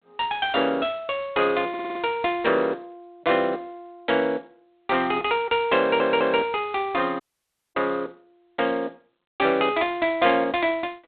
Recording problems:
phone line; 190 Hz to 3.9 kHz, G.726
stutter; at 1.5 s and at 6 s
audio cutting out; at 7 s for 0.5 s

